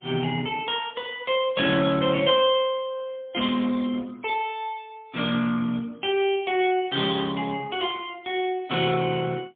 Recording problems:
telephone audio; 190 Hz to 3.5 kHz, AMR-NB, then MP3

